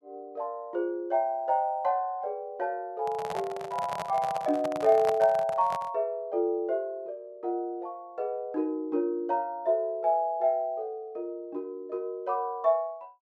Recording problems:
handling noise; from 3 to 6 s; peak -1 dB vs average level

